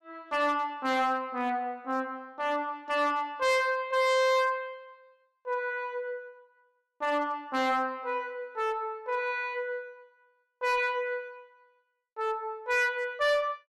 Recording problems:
distorted audio; hard clipping, uneven, signal-to-distortion ratio 11 dB

